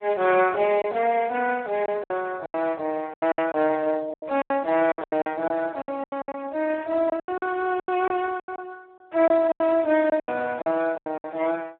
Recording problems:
phone line; 260 Hz to 3.1 kHz, Speex
lost packets; 14% of the sound replaced, filled with silence

